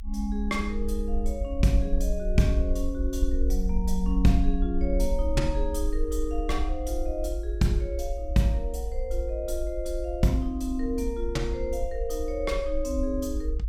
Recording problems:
rumble; below 54 Hz, SNR 3 dB

